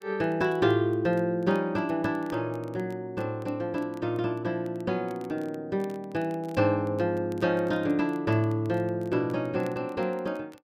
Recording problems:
crackling; vinyl, SNR 29 dB

